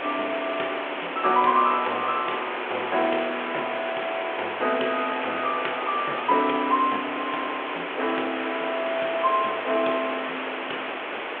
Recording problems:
telephone audio; 300 Hz to 3.5 kHz, G.726
background hiss; SNR 4 dB

